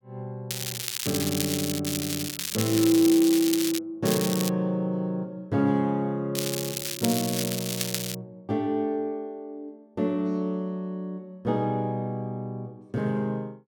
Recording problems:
crackling; from 0.5 to 4 s, at 4 s and from 6.5 to 8 s; loose cable, SNR 3 dB

